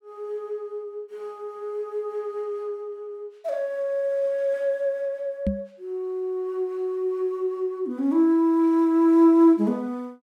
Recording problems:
knock on the microphone; at 5.5 s; peak +2 dB vs average level

